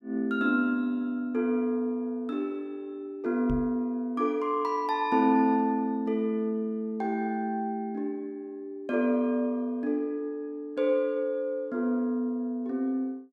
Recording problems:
knock on the microphone; at 3.5 s; peak -3 dB vs average level

